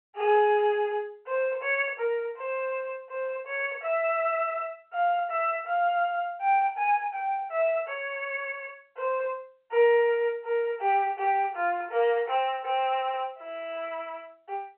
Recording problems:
telephone audio; 370 Hz to 3.1 kHz, G.711

